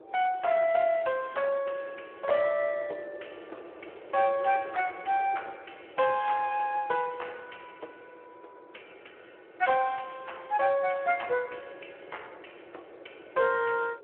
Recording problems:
phone line; 300 Hz to 3.2 kHz, Speex
wind on the microphone; below 610 Hz, SNR 20 dB

